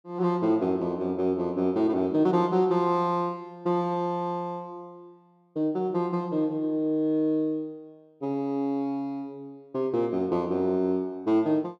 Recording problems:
none

